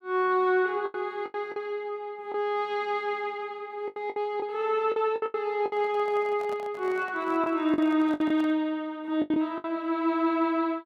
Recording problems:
packet loss; 9% of the sound replaced, filled with the last packet
handling noise; from 5.5 to 8.5 s; peak -10 dB vs average level

